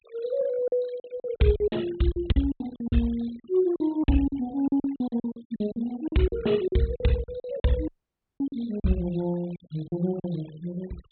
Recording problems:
treble cut off; nothing above 4 kHz
denoising artefacts; signal-to-artefact ratio 22 dB
lost packets; 14% of the sound replaced, filled with silence
dropout; at 8 s for 0.5 s

